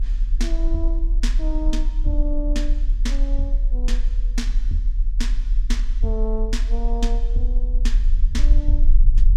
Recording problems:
rumble; below 38 Hz, strongest tone 36 Hz, SNR -8 dB

